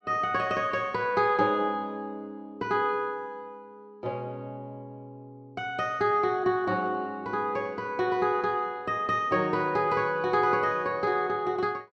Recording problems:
none

